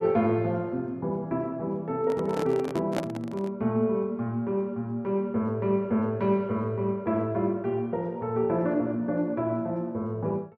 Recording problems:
microphone handling noise; from 2 to 3.5 s; peak +2 dB vs average level

